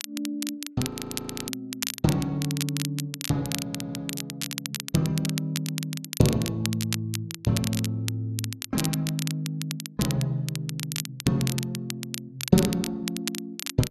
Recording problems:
crackling; vinyl, SNR 5 dB
frozen audio; at 1 s for 0.5 s
stutter; at 3.5 s

